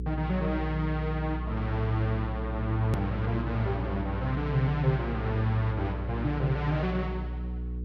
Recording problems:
mains hum; 60 Hz, harmonics up to 480 Hz, SNR 5 dB
click at an edit; at 3 s

